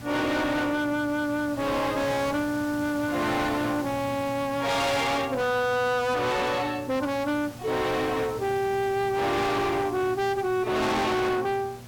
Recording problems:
distortion; hard clipping, signal-to-distortion ratio 7 dB
hum; 60 Hz, harmonics up to 840 Hz, SNR 19 dB
hiss; slope -3 dB per octave, SNR 16 dB

